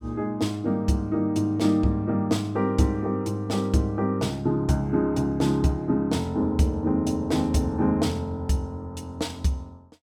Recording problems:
none

